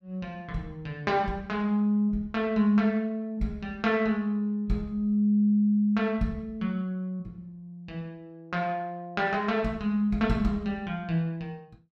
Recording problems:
none

